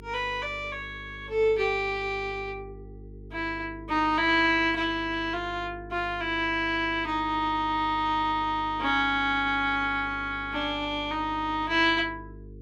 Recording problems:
electrical hum; 50 Hz, harmonics up to 450 Hz, SNR 19 dB

